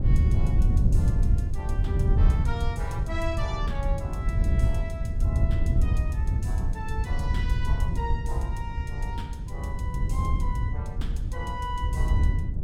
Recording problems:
wind noise; below 94 Hz, SNR -10 dB

